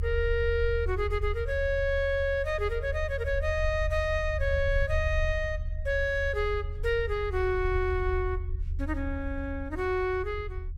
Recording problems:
rumble; below 78 Hz, strongest tone 32 Hz, SNR 5 dB

